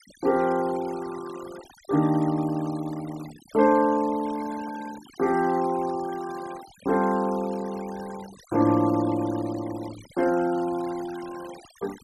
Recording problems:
noise reduction artefacts; signal-to-artefact ratio 19 dB

